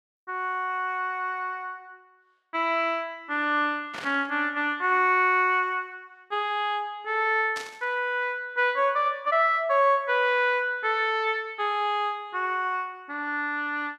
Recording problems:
static burst; at 4 s and at 7.5 s; peak -7 dB vs average level

